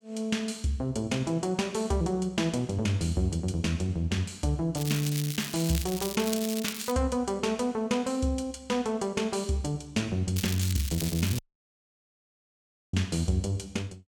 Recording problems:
crackle; from 5 to 7 s and from 10 to 11 s; loose cable, SNR 7 dB
dropout; at 11 s for 1.5 s

